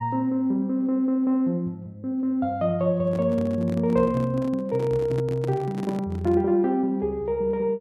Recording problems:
microphone handling noise; from 3 to 6.5 s; peak -5 dB vs average level

